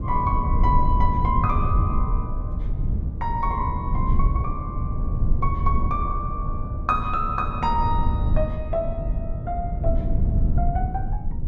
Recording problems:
low-frequency rumble; below 96 Hz, SNR -1 dB

